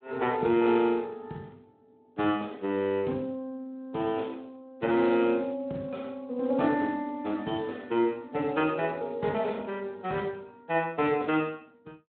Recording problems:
telephone audio; 110 Hz to 3.6 kHz, Speex

